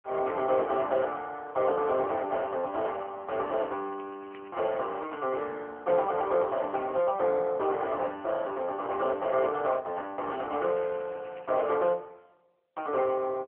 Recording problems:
phone line; 320 Hz to 3 kHz, AMR-NB
crackling; from 3.5 to 5.5 s and from 11 to 12 s; loose cable, SNR 25 dB

